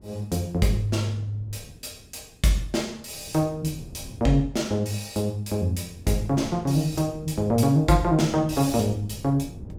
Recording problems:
wind on the microphone; below 220 Hz, SNR 18 dB

